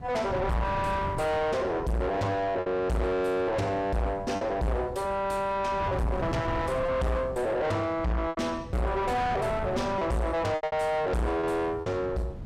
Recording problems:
distortion; soft clipping, signal-to-distortion ratio 6 dB
wind on the microphone; below 560 Hz, SNR 10 dB
lost packets; 4% of the sound replaced, filled with repeated pitch periods

